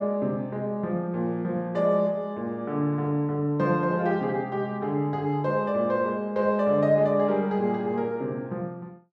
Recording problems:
none

